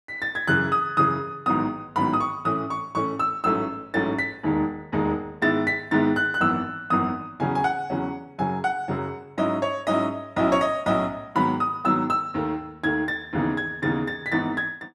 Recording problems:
none

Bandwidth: 13.5 kHz